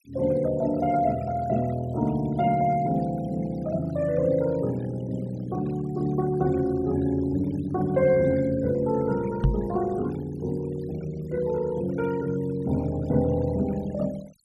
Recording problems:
denoising artefacts; signal-to-artefact ratio 21 dB
microphone thump; at 9.5 s; peak +7 dB vs average level

